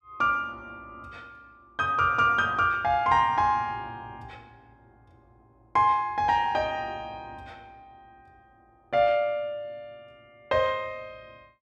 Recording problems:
none

